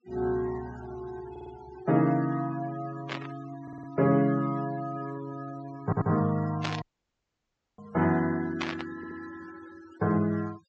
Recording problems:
treble cut off; nothing above 8 kHz
denoising artefacts; signal-to-artefact ratio 18 dB
audio stuttering; 4 times, first at 1.5 s
static burst; at 3 s, at 6.5 s and at 8.5 s; peak +1 dB vs average level
dropout; at 7 s for 1 s

